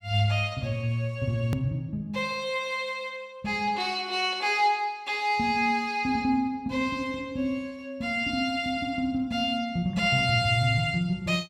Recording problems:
hard cut with a click; at 1.5 s

